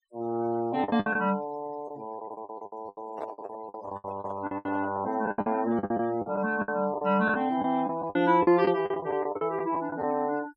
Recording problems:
denoising artefacts; signal-to-artefact ratio 23 dB
packet loss; 16% of the sound replaced, filled with the last packet
handling noise; from 3 to 5 s; peak -6 dB vs average level

